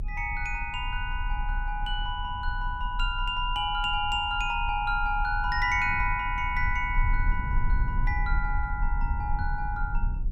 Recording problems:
low-frequency rumble; below 52 Hz, strongest tone 32 Hz, SNR 4 dB

